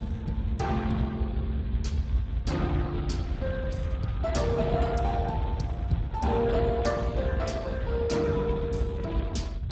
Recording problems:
codec artefacts; Speex, log-spectral distance 2 dB, nothing above 7.6 kHz
low-frequency rumble; below 110 Hz, SNR 2 dB

